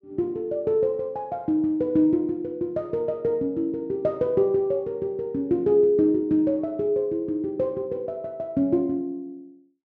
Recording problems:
none

